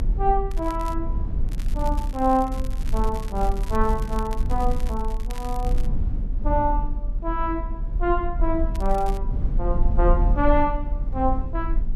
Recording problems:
rumble; below 50 Hz, SNR 1 dB
crackle; 4 times, first at 0.5 s; loose cable, SNR 19 dB

